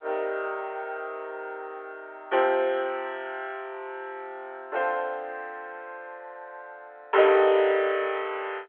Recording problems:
phone line; 340 Hz to 3.5 kHz, G.711

